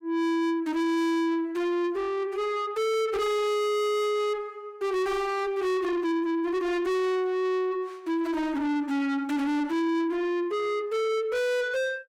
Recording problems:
distortion; soft clipping, signal-to-distortion ratio 6 dB

